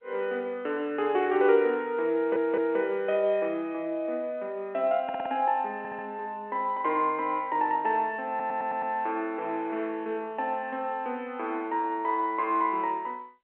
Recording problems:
phone line; 260 Hz to 3.3 kHz, G.711
stutter; 4 times, first at 2 s

